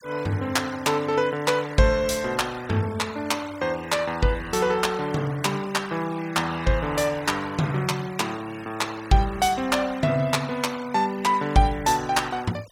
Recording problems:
noise reduction artefacts; signal-to-artefact ratio 20 dB

